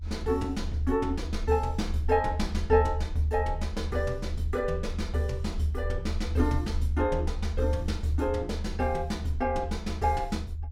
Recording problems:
rumble; below 78 Hz, SNR 5 dB

